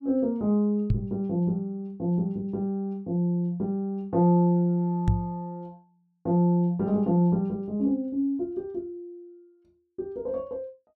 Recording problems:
microphone thump; at 1 s and at 5 s; peak +6 dB vs average level

